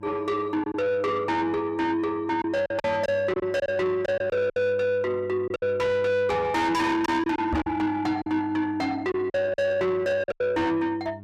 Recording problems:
distortion; soft clipping, signal-to-distortion ratio 6 dB
hum; 50 Hz, harmonics up to 700 Hz, SNR 20 dB
lost packets; 7% of the sound replaced, filled with silence
microphone bump; at 7.5 s; peak +2 dB vs average level

